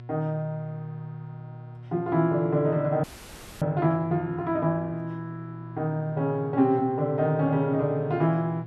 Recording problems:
hum; 60 Hz, harmonics up to 720 Hz, SNR 16 dB
frozen audio; at 3 s for 0.5 s

